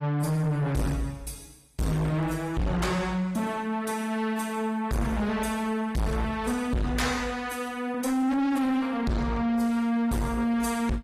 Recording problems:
lossy codec; AAC, log-spectral distance 3 dB, nothing above 14.3 kHz
distortion; soft clipping, signal-to-distortion ratio 6 dB

